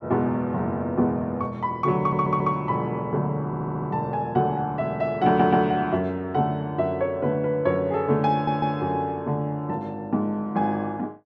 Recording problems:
stutter; 4 times, first at 2 s

